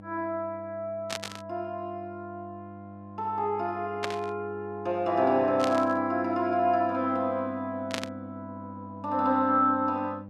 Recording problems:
hum; 50 Hz, harmonics up to 1.1 kHz, SNR 16 dB
burst of static; 4 times, first at 1 s; peak 0 dB vs average level

